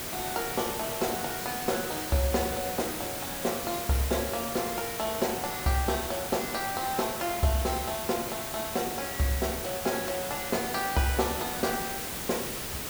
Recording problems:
hiss; slope -2 dB per octave, SNR 3 dB

